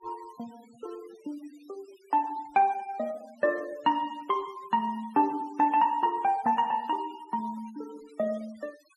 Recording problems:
denoising artefacts; signal-to-artefact ratio 24 dB

